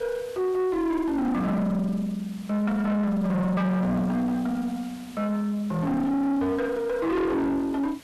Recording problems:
distorted audio; soft clipping, signal-to-distortion ratio 7 dB
hiss; slope -2 dB per octave, SNR 23 dB

